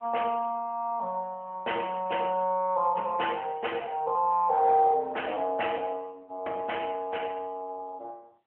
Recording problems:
telephone audio; 340 Hz to 3.2 kHz, AMR-NB

